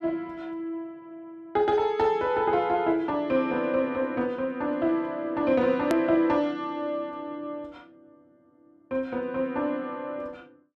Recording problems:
click at an edit; at 6 s

